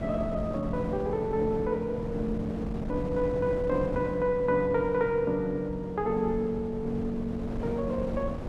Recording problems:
electrical hum; 50 Hz, harmonics up to 550 Hz, SNR 24 dB
wind noise; below 410 Hz, SNR 8 dB

